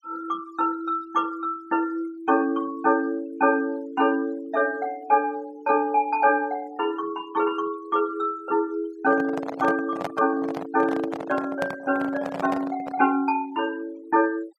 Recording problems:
noise reduction artefacts; signal-to-artefact ratio 23 dB
microphone handling noise; from 9 to 13 s; peak 0 dB vs average level

